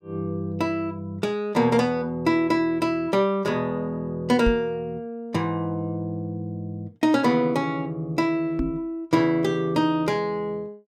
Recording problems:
knock on the microphone; at 4.5 s and at 8.5 s; peak +1 dB vs average level

